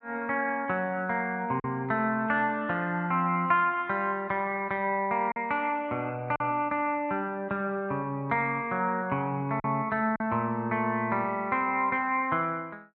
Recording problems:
packet loss; 1.6% of the sound replaced, filled with silence

